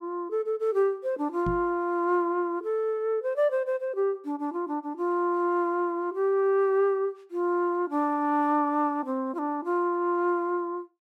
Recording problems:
microphone thump; at 1.5 s; peak -2 dB vs average level

